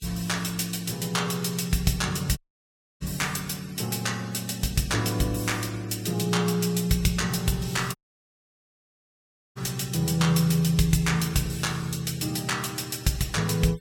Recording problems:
noise reduction artefacts; signal-to-artefact ratio 21 dB
audio cutting out; at 2.5 s for 0.5 s and at 8 s for 1.5 s

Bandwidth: 17 kHz